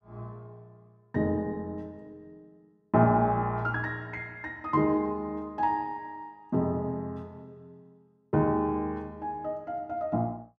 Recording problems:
none

